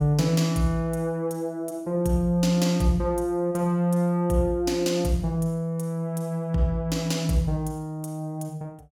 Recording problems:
none

